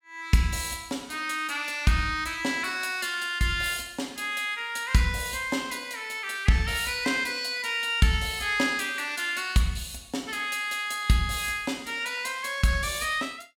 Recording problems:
none

